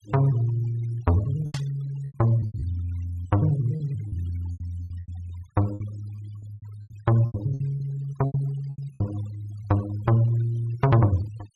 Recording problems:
denoising artefacts; signal-to-artefact ratio 22 dB
packet loss; 12% of the sound replaced, filled with repeated pitch periods
static burst; at 1.5 s; peak -8 dB vs average level

